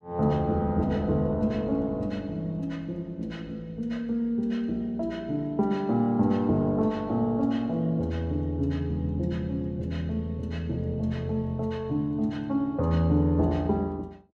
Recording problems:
none

